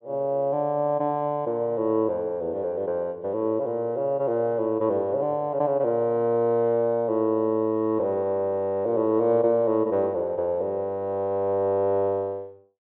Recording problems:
low-pass filter; nothing above 4 kHz

